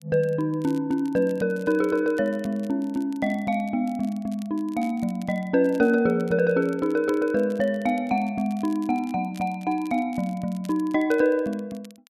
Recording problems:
crackle; vinyl, SNR 27 dB

